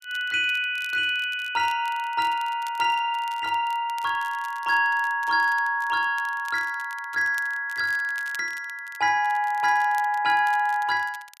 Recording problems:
crackle; vinyl, SNR 24 dB

